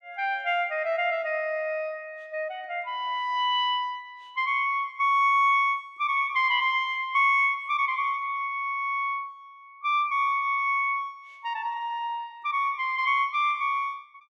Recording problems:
none

